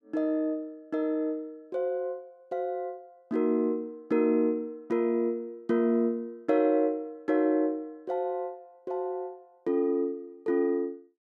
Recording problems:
none

